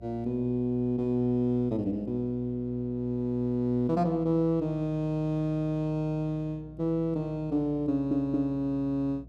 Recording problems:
mains hum; 60 Hz, harmonics up to 720 Hz, SNR 21 dB
audio stuttering; at 8 s

